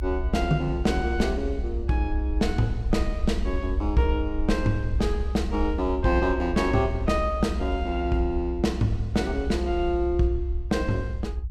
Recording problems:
low-frequency rumble; below 64 Hz, strongest tone 62 Hz, SNR 4 dB

